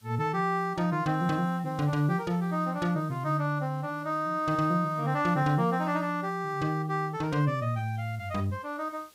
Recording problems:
background hiss; slope 0 dB per octave, SNR 30 dB

